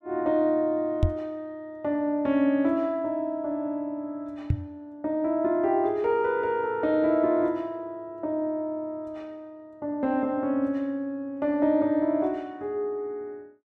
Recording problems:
knock on the microphone; at 1 s and at 4.5 s; peak +7 dB vs average level

